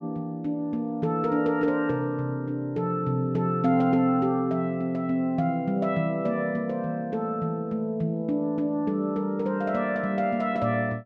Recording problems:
none

